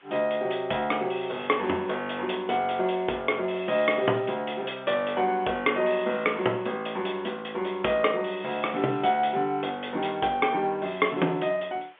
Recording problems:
telephone audio; 240 Hz to 3.4 kHz, G.711
hiss; SNR 27 dB

